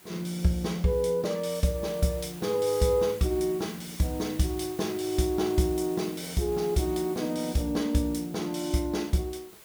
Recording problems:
background hiss; slope -2 dB per octave, SNR 18 dB

